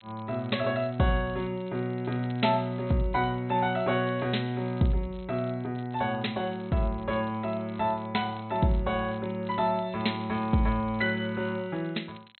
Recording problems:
treble cut off; nothing above 4.1 kHz
crackling; vinyl, SNR 27 dB

